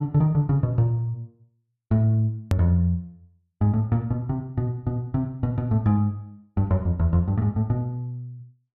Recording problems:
click at an edit; at 2.5 s

